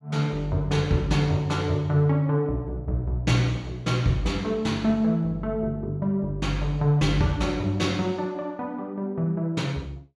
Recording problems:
none

